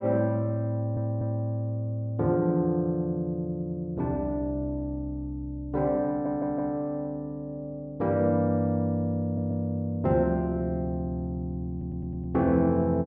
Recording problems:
audio stuttering; 4 times, first at 0.5 s

